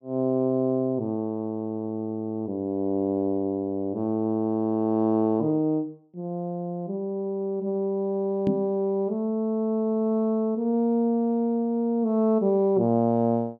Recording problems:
microphone thump; at 8.5 s; peak +2 dB vs average level

